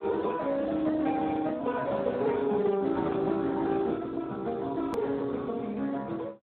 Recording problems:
phone line; 170 Hz to 2.3 kHz, Speex
hard cut with a click; at 5 s

